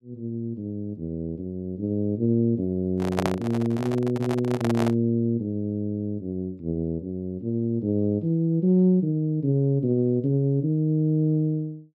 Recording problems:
microphone handling noise; from 3 to 5 s; peak +2 dB vs average level

